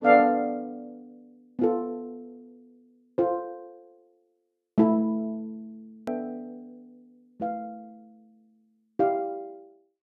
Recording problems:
click at an edit; at 6 s

